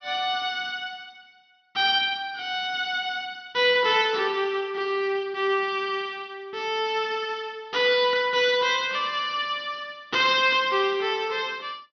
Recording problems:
treble missing; nothing above 6.2 kHz

